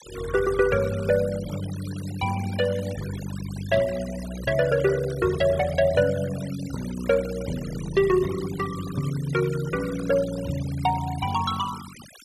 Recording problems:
noise reduction artefacts; signal-to-artefact ratio 16 dB

